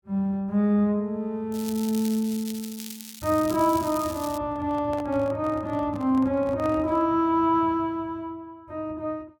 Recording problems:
crackle; from 1.5 to 4.5 s; loose cable, SNR 14 dB
microphone handling noise; from 4.5 to 7 s; peak -10 dB vs average level

